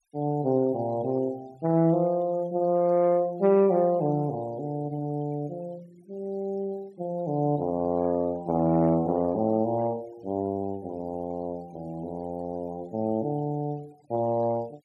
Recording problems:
denoising artefacts; signal-to-artefact ratio 28 dB

